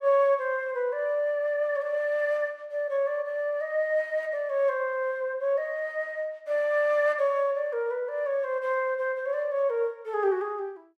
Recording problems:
none

